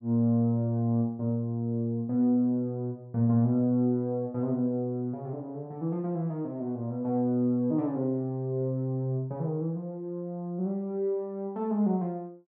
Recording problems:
none

